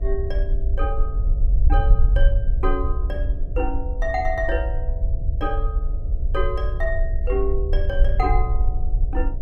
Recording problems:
electrical hum; 60 Hz, harmonics up to 720 Hz, SNR 17 dB
low-frequency rumble; below 52 Hz, SNR -4 dB

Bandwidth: 14.5 kHz